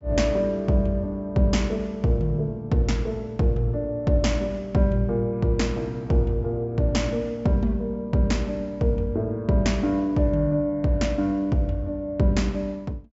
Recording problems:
treble missing; nothing above 8 kHz

